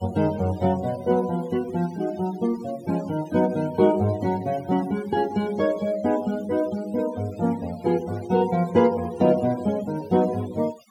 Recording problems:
denoising artefacts; signal-to-artefact ratio 20 dB

